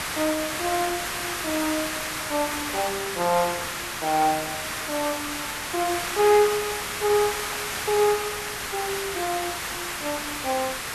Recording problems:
background hiss; SNR 2 dB

